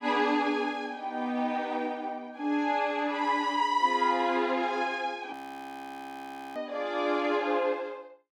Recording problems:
audio freezing; at 5.5 s for 1 s

